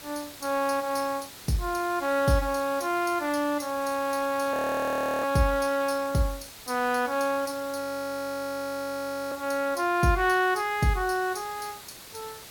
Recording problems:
hiss; slope -1 dB per octave, SNR 16 dB
audio freezing; at 4.5 s for 0.5 s and at 8 s for 1.5 s

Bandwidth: 17 kHz